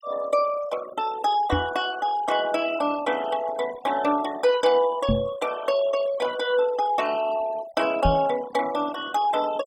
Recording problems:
denoising artefacts; signal-to-artefact ratio 15 dB
microphone thump; at 1.5 s, at 5 s and at 8 s; peak +3 dB vs average level

